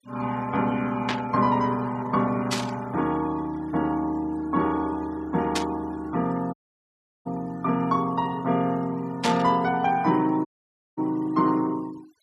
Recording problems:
noise reduction artefacts; signal-to-artefact ratio 23 dB
static burst; 4 times, first at 1 s; peak +2 dB vs average level
dropout; at 6.5 s for 0.5 s and at 10 s for 0.5 s

